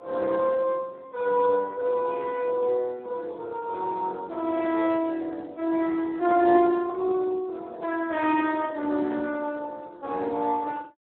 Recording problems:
telephone audio; 240 Hz to 3.7 kHz, Speex

